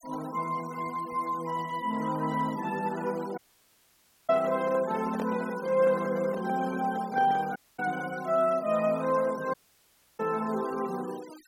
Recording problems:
denoising artefacts; signal-to-artefact ratio 20 dB
audio cutting out; at 3.5 s for 1 s, at 7.5 s and at 9.5 s for 0.5 s
handling noise; from 4.5 to 7.5 s; peak -5 dB vs average level

